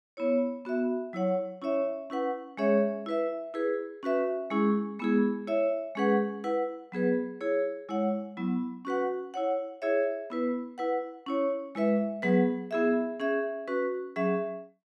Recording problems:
none

